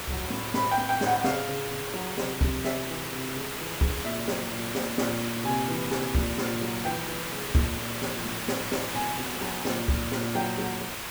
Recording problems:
hiss; SNR 2 dB

